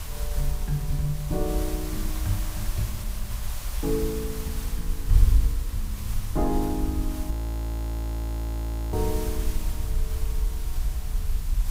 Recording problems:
background hiss; SNR 8 dB
wind on the microphone; below 58 Hz, SNR -2 dB
audio freezing; at 7.5 s for 1.5 s

